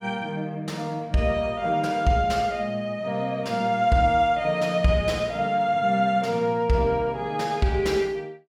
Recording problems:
none

